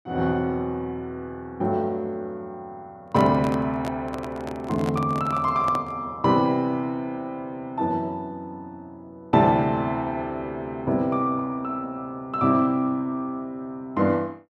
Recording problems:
microphone handling noise; from 3 to 6 s; peak -3 dB vs average level

